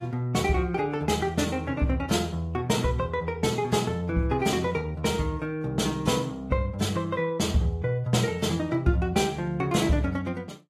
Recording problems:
lossy codec; AAC, log-spectral distance 2 dB, nothing above 13.1 kHz

